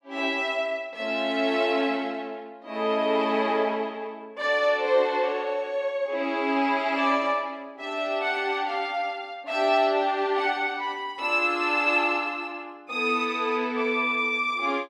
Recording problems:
none

